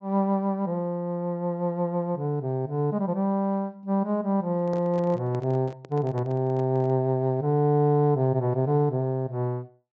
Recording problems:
low-pass filter; nothing above 8 kHz
handling noise; from 4.5 to 7 s; peak -9 dB vs average level

